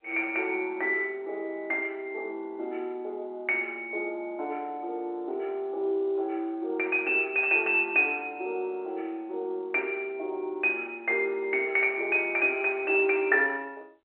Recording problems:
phone line; 340 Hz to 3.5 kHz, G.711

